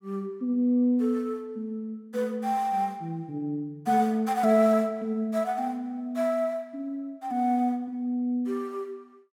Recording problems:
none

